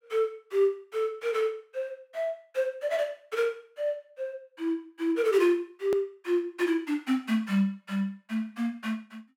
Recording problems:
hard cut with a click; at 6 s

